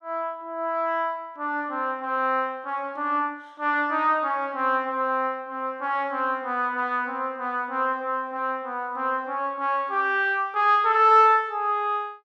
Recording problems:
none

